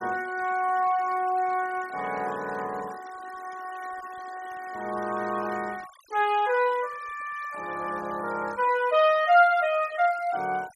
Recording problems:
denoising artefacts; signal-to-artefact ratio 21 dB

